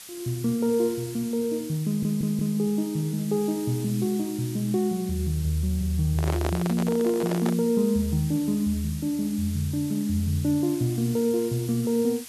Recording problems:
hiss; slope +2 dB per octave, SNR 15 dB
audio stuttering; at 2 s
microphone handling noise; from 6 to 7.5 s; peak 0 dB vs average level

